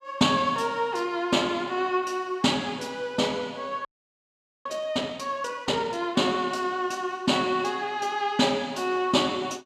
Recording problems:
frozen audio; at 4 s for 1 s

